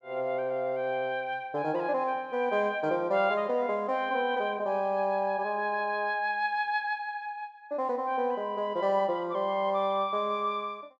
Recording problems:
none

